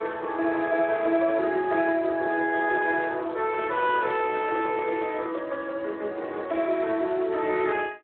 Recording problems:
phone line; 280 Hz to 3.7 kHz, Speex
microphone handling noise; from 3.5 to 5.5 s; peak -8 dB vs average level

